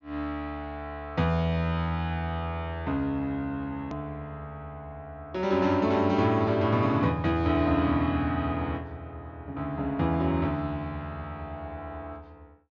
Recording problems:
treble missing; nothing above 6.8 kHz
click at an edit; at 4 s

